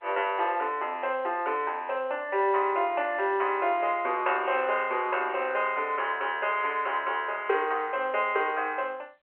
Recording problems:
phone line; 340 Hz to 3.2 kHz, G.711

